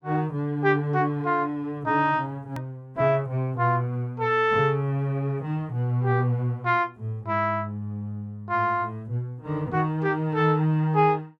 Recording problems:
hard cut with a click; at 2.5 s

